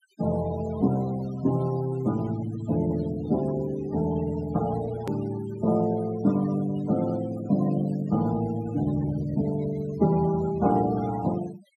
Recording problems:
denoising artefacts; signal-to-artefact ratio 16 dB
hard cut with a click; at 5 s

